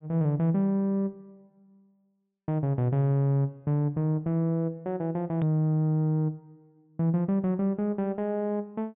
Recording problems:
low-pass filter; nothing above 3.7 kHz
click at an edit; at 5.5 s

